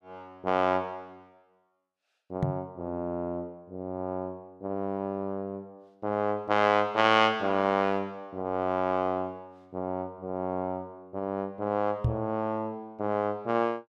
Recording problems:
microphone bump; at 2.5 s and at 12 s; peak +6 dB vs average level

